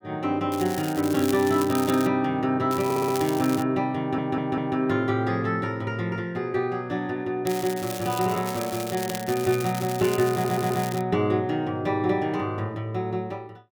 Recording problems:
crackle; from 0.5 to 2 s, at 2.5 s and from 7.5 to 11 s; loose cable, SNR 12 dB
stutter; at 3 s, at 4 s and at 10 s

